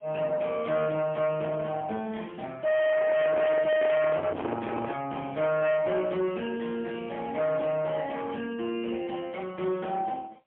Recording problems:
telephone audio; 190 Hz to 3.3 kHz, AMR-NB, then MP3
distortion; soft clipping, signal-to-distortion ratio 7 dB
handling noise; from 3 to 5 s; peak +1 dB vs average level

